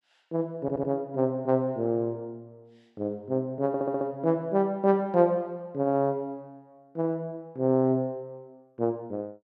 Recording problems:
audio stuttering; at 0.5 s and at 3.5 s

